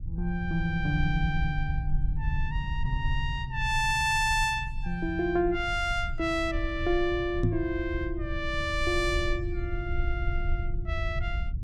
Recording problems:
rumble; below 72 Hz, SNR 5 dB
microphone bump; at 7.5 s; peak +6 dB vs average level

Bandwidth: 14 kHz